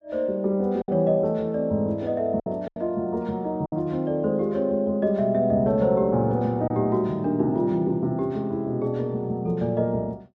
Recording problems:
packet loss; 3% of the sound replaced, filled with silence

